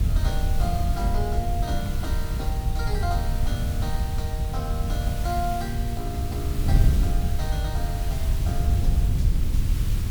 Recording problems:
background hiss; slope 0 dB per octave, SNR 7 dB
wind on the microphone; below 90 Hz, SNR -7 dB

